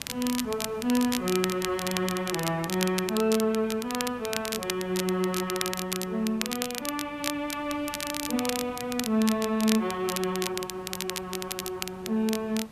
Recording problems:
hiss; slope -5 dB per octave, SNR 20 dB
crackle; vinyl, SNR 5 dB

